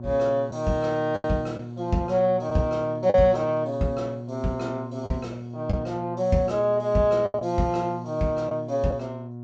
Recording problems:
treble cut off; nothing above 8 kHz
hum; 60 Hz, harmonics up to 720 Hz, SNR 11 dB
packet loss; 4% of the sound replaced, filled with the last packet

